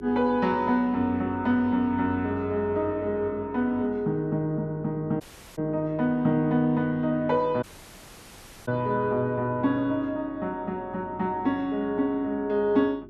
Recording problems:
electrical hum; 50 Hz, harmonics up to 400 Hz, SNR 20 dB
audio cutting out; at 5 s and at 7.5 s for 1 s

